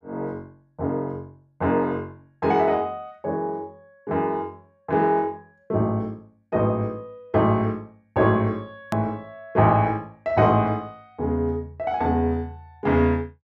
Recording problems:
click at an edit; at 9 s

